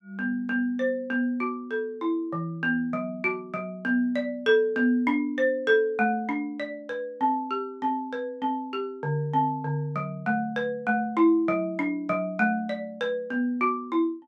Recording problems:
none

